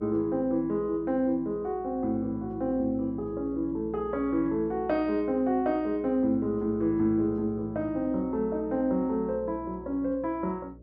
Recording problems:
electrical hum; 60 Hz, harmonics up to 600 Hz, SNR 20 dB

